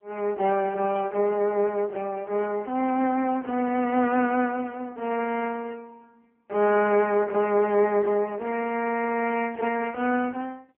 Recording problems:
telephone audio; 220 Hz to 2.7 kHz, AMR-NB
burst of static; at 1 s and at 9.5 s; peak -16 dB vs average level

